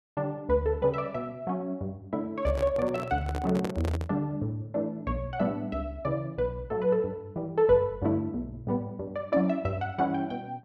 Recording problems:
handling noise; from 2.5 to 4 s; peak -1 dB vs average level

